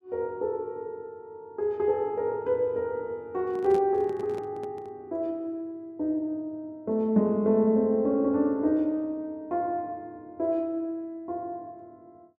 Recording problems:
microphone handling noise; from 3.5 to 5 s; peak -7 dB vs average level

